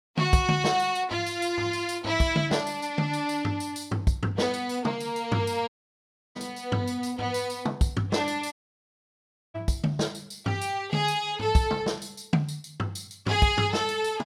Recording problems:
dropout; at 5.5 s for 0.5 s and at 8.5 s for 1 s

